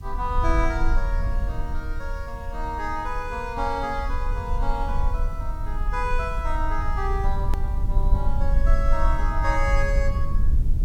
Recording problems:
hiss; SNR 28 dB
low-frequency rumble; below 52 Hz, SNR -2 dB
edit click; at 7.5 s

